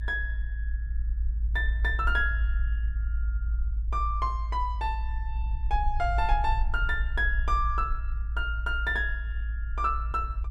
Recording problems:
rumble; below 56 Hz, strongest tone 54 Hz, SNR 1 dB

